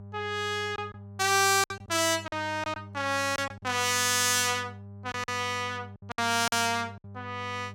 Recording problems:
electrical hum; 50 Hz, harmonics up to 800 Hz, SNR 18 dB
lost packets; 6% of the sound replaced, filled with silence

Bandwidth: 16.5 kHz